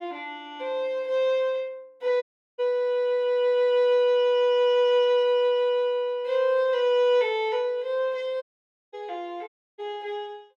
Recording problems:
audio cutting out; at 2 s, at 8.5 s for 0.5 s and at 9.5 s

